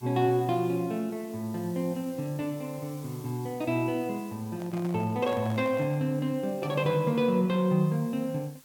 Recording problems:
hiss; slope +1 dB per octave, SNR 23 dB
handling noise; from 4.5 to 6 s; peak -10 dB vs average level

